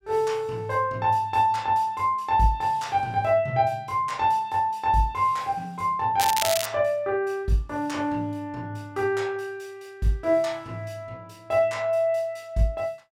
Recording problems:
crackling; at 6 s; loose cable, SNR 3 dB

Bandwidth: 16 kHz